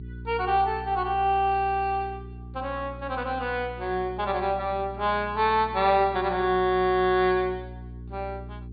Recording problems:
treble cut off; nothing above 4.6 kHz
mains hum; 60 Hz, harmonics up to 420 Hz, SNR 15 dB

